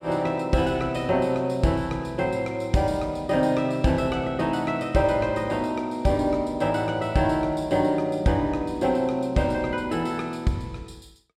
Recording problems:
none

